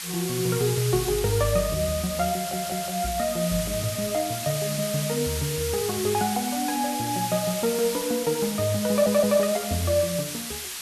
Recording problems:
hiss; slope +3 dB per octave, SNR 5 dB
audio stuttering; at 2.5 s and at 9 s

